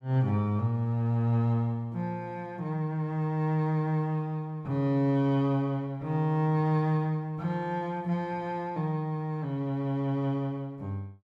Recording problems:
none

